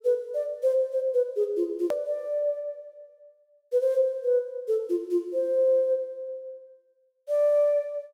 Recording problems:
hard cut with a click; at 2 s

